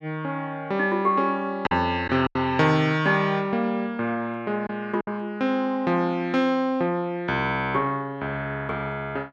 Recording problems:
packet loss; 2% of the sound replaced, filled with silence

